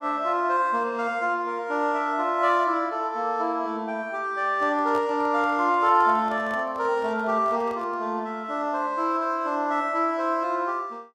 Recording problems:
handling noise; from 4.5 to 8 s; peak -9 dB vs average level

